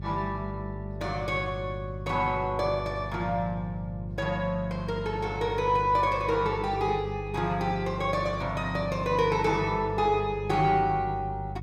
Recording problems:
electrical hum; 50 Hz, harmonics up to 400 Hz, SNR 9 dB

